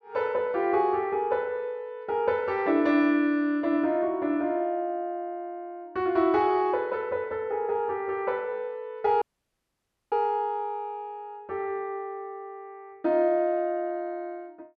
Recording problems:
dropout; at 9 s for 1 s

